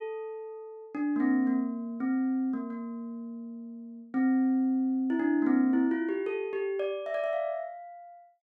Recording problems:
none

